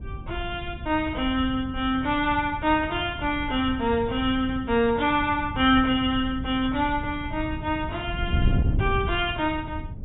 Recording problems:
low-pass filter; nothing above 4 kHz
wind on the microphone; below 130 Hz, SNR 8 dB

